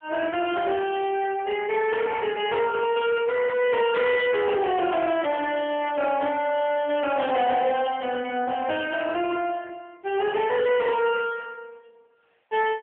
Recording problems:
phone line; 280 Hz to 3.2 kHz, AMR-NB
distortion; soft clipping, signal-to-distortion ratio 11 dB

